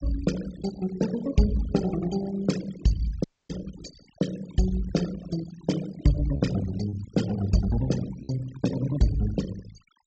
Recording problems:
treble missing; nothing above 8 kHz
denoising artefacts; signal-to-artefact ratio 13 dB
packet loss; 1.3% of the sound replaced, filled with repeated pitch periods
dropout; at 3 s

